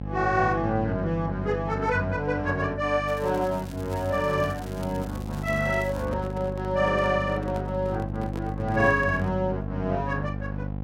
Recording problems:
electrical hum; 50 Hz, harmonics up to 850 Hz, SNR 7 dB
crackle; from 3 to 6 s; loose cable, SNR 21 dB
handling noise; from 5.5 to 9.5 s; peak -8 dB vs average level

